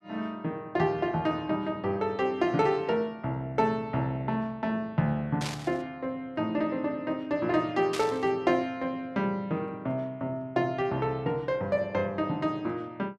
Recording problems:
burst of static; at 5.5 s and at 8 s; peak -1 dB vs average level

